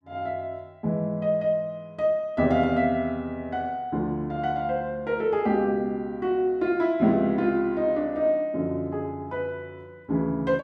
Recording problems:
none

